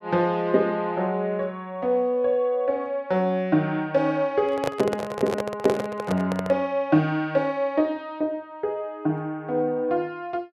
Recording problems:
handling noise; from 4.5 to 6.5 s; peak +2 dB vs average level

